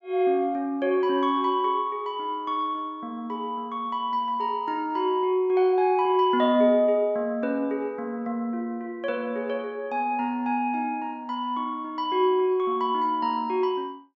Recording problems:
treble missing; nothing above 8 kHz

